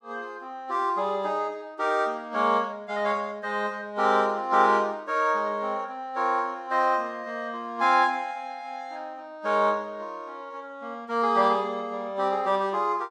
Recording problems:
none

